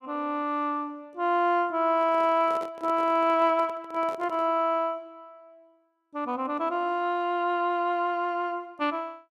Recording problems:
microphone handling noise; from 2 to 4.5 s; peak -9 dB vs average level

